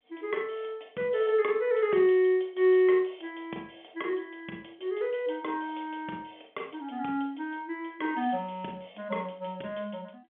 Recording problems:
telephone audio; 220 Hz to 3.4 kHz, G.711

